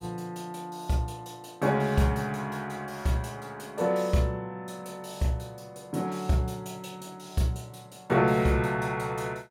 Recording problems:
none

